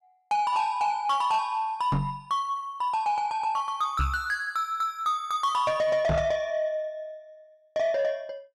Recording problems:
distortion; soft clipping, signal-to-distortion ratio 11 dB
microphone bump; at 2 s, at 4 s and at 6 s; peak +4 dB vs average level

